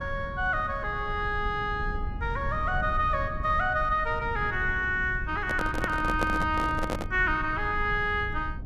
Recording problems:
rumble; below 110 Hz, SNR 9 dB
handling noise; from 5.5 to 7 s; peak +1 dB vs average level

